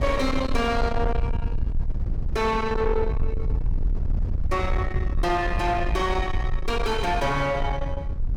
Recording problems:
distortion; soft clipping, signal-to-distortion ratio 7 dB
rumble; below 84 Hz, SNR 3 dB

